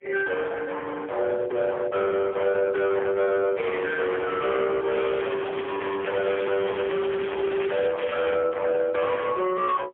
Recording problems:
phone line; 600 Hz to 2.2 kHz, AMR-NB, then MP3
distorted audio; hard clipping, uneven, signal-to-distortion ratio 5 dB
crackle; from 5 to 8 s and at 8 s; loose cable, SNR 11 dB

